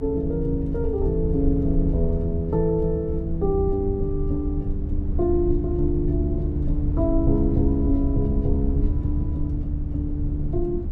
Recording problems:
rumble; below 76 Hz, strongest tone 24 Hz, SNR 2 dB

